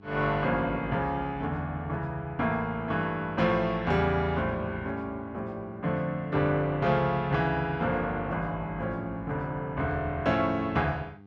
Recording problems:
hum; 50 Hz, harmonics up to 1.2 kHz, SNR 23 dB

